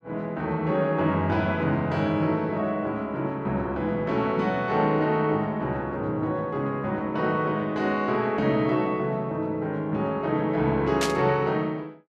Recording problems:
burst of static; at 11 s; peak +2 dB vs average level

